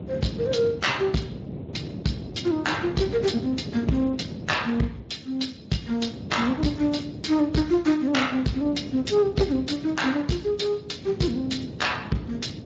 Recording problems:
codec artefacts; MP3, then Speex, log-spectral distance 5 dB
distortion; hard clipping, uneven, signal-to-distortion ratio 9 dB
wind noise; below 350 Hz, SNR 12 dB

